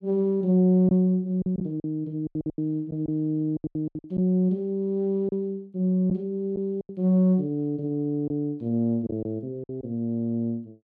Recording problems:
lost packets; 9% of the sound replaced, filled with silence

